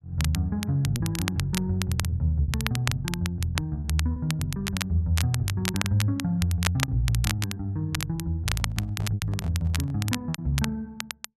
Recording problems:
crackling; vinyl, SNR 7 dB
packet loss; 6% of the sound replaced, filled with repeated pitch periods
handling noise; from 8.5 to 10 s; peak -11 dB vs average level

